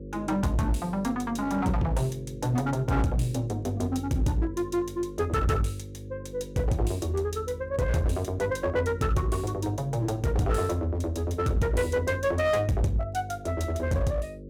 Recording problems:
distorted audio; hard clipping, uneven, signal-to-distortion ratio 10 dB
electrical hum; 50 Hz, harmonics up to 550 Hz, SNR 14 dB

